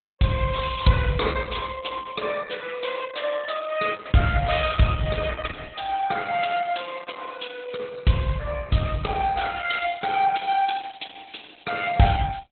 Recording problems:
lossy compression; Opus, log-spectral distance 8 dB, nothing above 4 kHz

